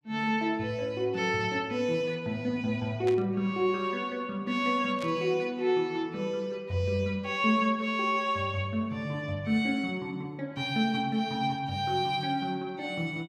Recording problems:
static burst; at 3 s and at 5 s; peak -8 dB vs average level

